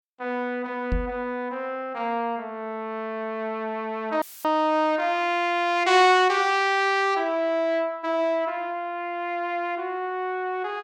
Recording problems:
microphone thump; at 1 s; peak +1 dB vs average level
audio cutting out; at 4 s; filled with static

